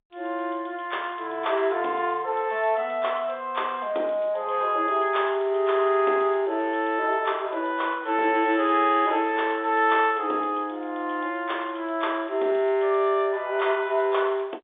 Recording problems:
telephone audio; 280 Hz to 3.6 kHz, G.711

